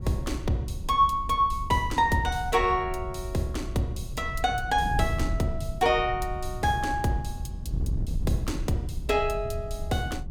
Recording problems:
wind noise; below 96 Hz, SNR 7 dB

